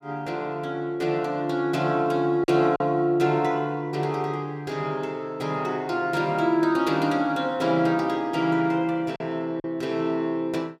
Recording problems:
packet loss; 1.5% of the sound replaced, filled with silence

